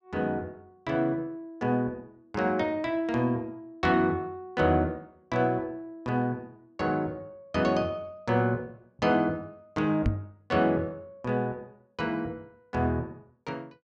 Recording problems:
knock on the microphone; at 10 s; peak +6 dB vs average level

